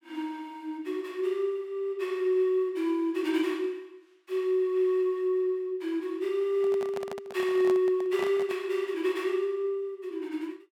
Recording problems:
microphone handling noise; from 6.5 to 8.5 s; peak -6 dB vs average level

